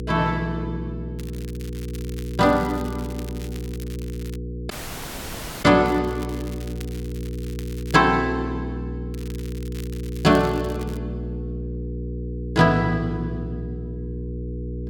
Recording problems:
electrical hum; 60 Hz, harmonics up to 480 Hz, SNR 9 dB
crackle; from 1 to 4.5 s, from 6 to 8 s and from 9 to 11 s; loose cable, SNR 22 dB
audio cutting out; at 4.5 s for 1 s

